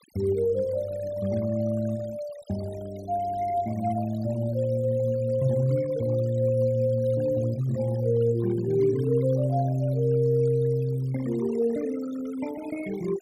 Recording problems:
denoising artefacts; signal-to-artefact ratio 20 dB

